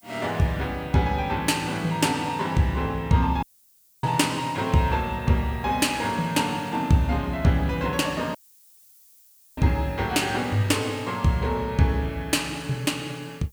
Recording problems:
background hiss; SNR 29 dB
dropout; at 3.5 s for 0.5 s and at 8.5 s for 1 s

